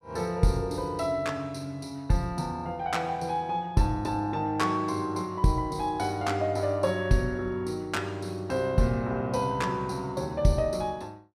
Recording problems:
none

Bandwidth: 15.5 kHz